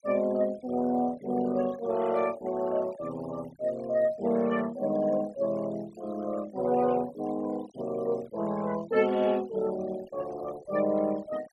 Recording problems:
noise reduction artefacts; signal-to-artefact ratio 20 dB

